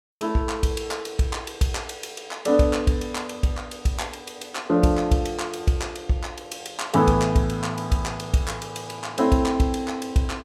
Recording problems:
none

